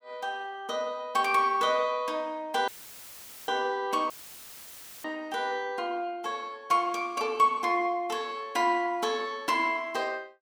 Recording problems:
audio cutting out; at 2.5 s for 1 s and at 4 s for 1 s; filled with static

